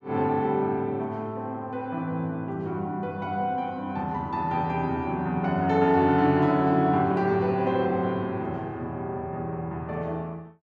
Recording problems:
none

